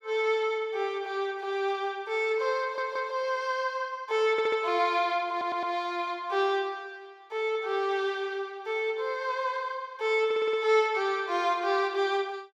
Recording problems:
audio stuttering; 4 times, first at 2.5 s

